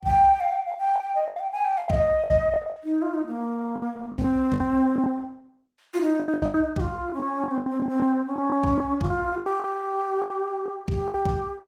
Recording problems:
lossy compression; Opus, log-spectral distance 2 dB
packet loss; 14% of the sound replaced, filled with the last packet

